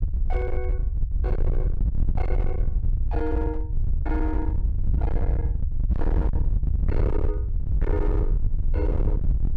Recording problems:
distorted audio; hard clipping, signal-to-distortion ratio 6 dB
low-frequency rumble; below 72 Hz, SNR -7 dB

